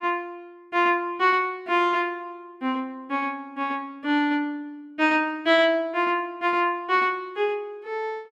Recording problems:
none

